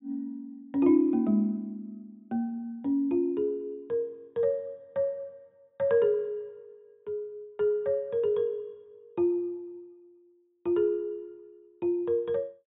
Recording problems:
low-pass filter; nothing above 4 kHz

